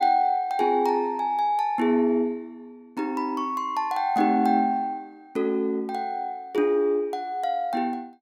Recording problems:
none

